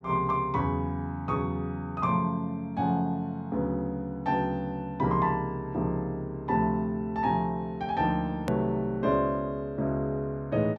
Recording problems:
click at an edit; at 8.5 s

